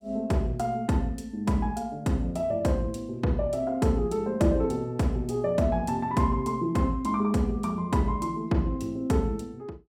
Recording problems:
none

